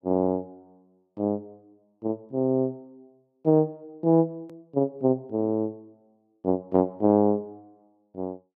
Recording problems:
edit click; at 4.5 s

